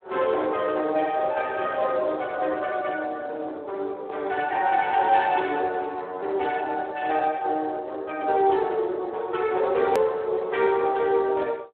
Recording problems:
telephone audio; 320 Hz to 3.5 kHz, Speex
edit click; at 10 s

